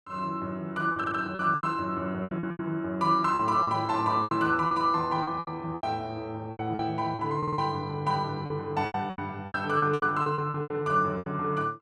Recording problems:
packet loss; 14% of the sound replaced, filled with repeated pitch periods
audio stuttering; at 1 s and at 7.5 s

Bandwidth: 13 kHz